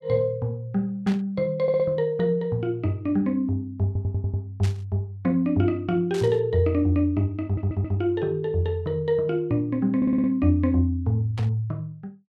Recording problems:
static burst; 4 times, first at 1 s; peak -9 dB vs average level
audio stuttering; 4 times, first at 1.5 s

